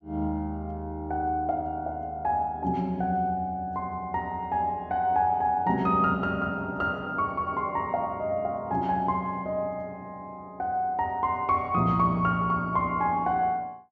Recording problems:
treble missing; nothing above 8 kHz

